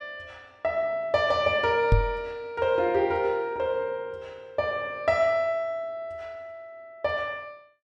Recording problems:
microphone thump; at 2 s; peak +8 dB vs average level

